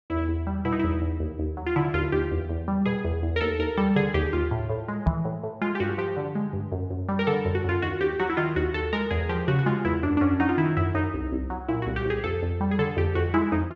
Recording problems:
low-pass filter; nothing above 8 kHz
microphone bump; at 5 s; peak +5 dB vs average level

